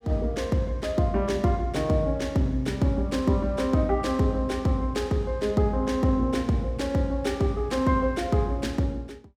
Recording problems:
none

